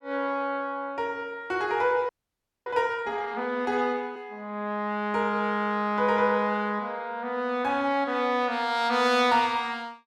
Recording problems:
frozen audio; at 2 s for 0.5 s

